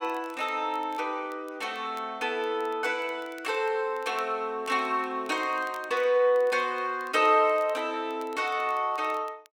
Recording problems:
crackle; vinyl, SNR 28 dB

